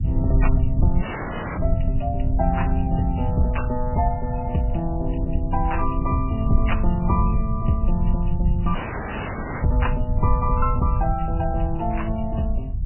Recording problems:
lossy compression; MP3, log-spectral distance 4 dB, nothing above 2.9 kHz
low-frequency rumble; below 92 Hz, SNR 0 dB
dropout; at 1 s for 0.5 s and at 9 s for 1 s

